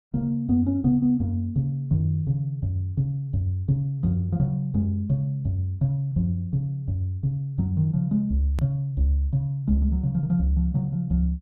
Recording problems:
click at an edit; at 8.5 s

